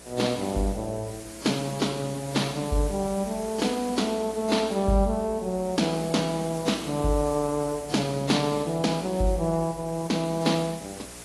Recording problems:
lossy codec; AAC, log-spectral distance 9 dB, nothing above 11 kHz
hum; 60 Hz, harmonics up to 720 Hz, SNR 24 dB
hiss; slope -1 dB per octave, SNR 15 dB

